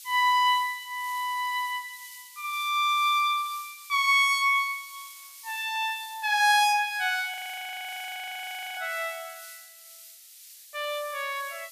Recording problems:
hiss; SNR 18 dB
audio freezing; at 7.5 s for 1.5 s

